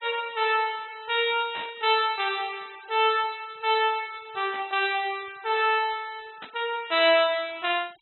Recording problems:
treble missing; nothing above 4 kHz
noise reduction artefacts; signal-to-artefact ratio 26 dB
burst of static; at 1.5 s, at 4.5 s and at 6.5 s; peak -10 dB vs average level

